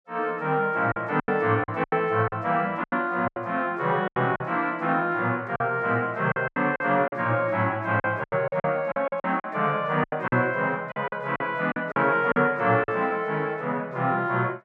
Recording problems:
packet loss; 11% of the sound replaced, filled with silence

